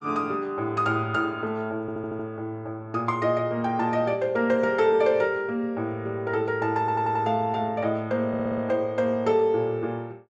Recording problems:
stutter; at 2 s, at 7 s and at 8.5 s

